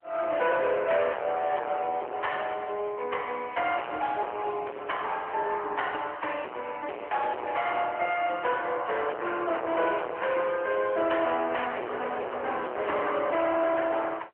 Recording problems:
phone line; 340 Hz to 3.2 kHz, AMR-NB
distorted audio; hard clipping, signal-to-distortion ratio 7 dB

